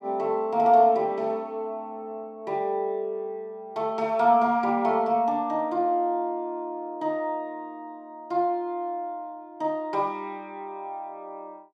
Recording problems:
none

